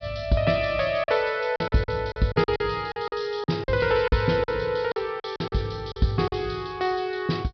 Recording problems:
low-pass filter; nothing above 5.5 kHz
lost packets; 11% of the sound replaced, filled with silence

